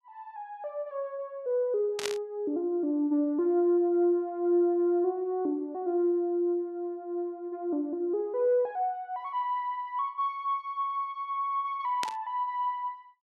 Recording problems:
burst of static; at 2 s and at 12 s; peak +1 dB vs average level

